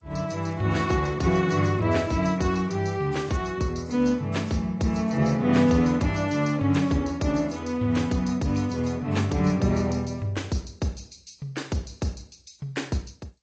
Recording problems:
lossy codec; G.722, then AAC, log-spectral distance 4 dB

